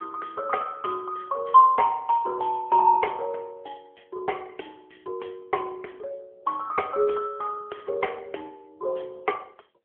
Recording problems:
phone line; 320 Hz to 3.2 kHz, AMR-NB

